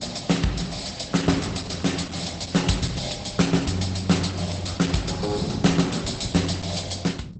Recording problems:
lossy codec; Opus, log-spectral distance 7 dB, nothing above 12 kHz
wind noise; below 230 Hz, SNR 12 dB
crackle; from 0.5 to 3 s and at 6.5 s; loose cable, SNR 24 dB

